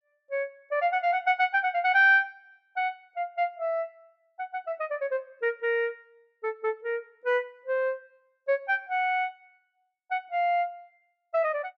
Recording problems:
none

